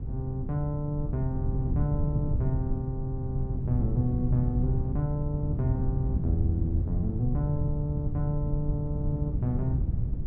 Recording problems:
wind on the microphone; below 130 Hz, SNR 1 dB

